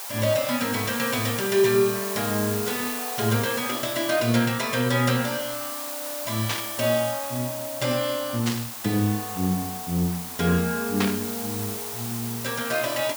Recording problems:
hiss; SNR 6 dB
burst of static; at 6.5 s, at 8.5 s and at 11 s; peak +3 dB vs average level

